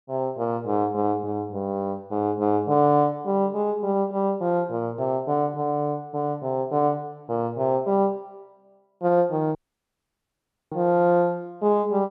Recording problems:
dropout; at 9.5 s for 1 s

